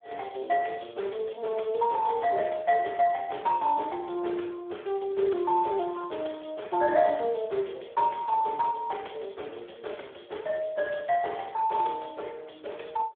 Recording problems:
phone line; 320 Hz to 3.6 kHz, Speex

